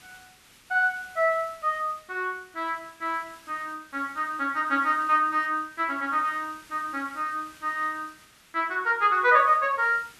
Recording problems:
background hiss; SNR 25 dB

